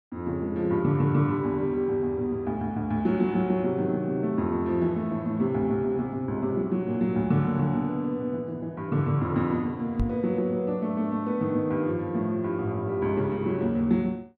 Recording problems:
knock on the microphone; at 10 s; peak +2 dB vs average level

